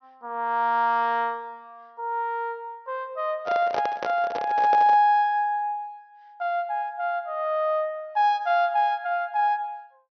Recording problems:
treble missing; nothing above 6.1 kHz
handling noise; from 3.5 to 5 s; peak -2 dB vs average level

